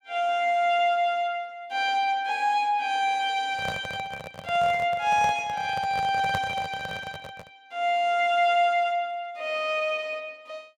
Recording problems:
handling noise; from 3.5 to 7.5 s; peak -2 dB vs average level

